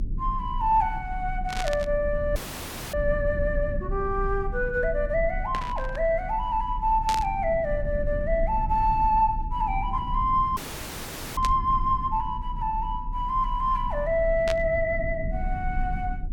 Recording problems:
rumble; below 66 Hz, strongest tone 32 Hz, SNR 8 dB
static burst; 5 times, first at 1.5 s; peak -2 dB vs average level
dropout; at 2.5 s for 0.5 s and at 11 s for 1 s

